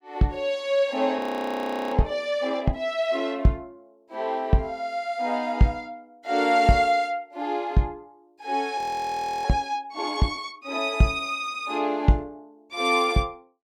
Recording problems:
frozen audio; at 1 s for 0.5 s and at 9 s for 0.5 s

